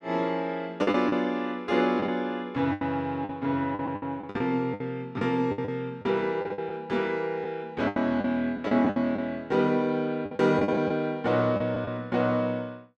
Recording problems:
packet loss; 10% of the sound replaced, filled with the last packet

